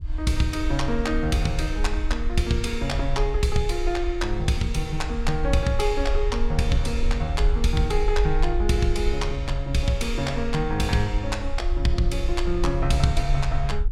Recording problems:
rumble; below 52 Hz, SNR 3 dB

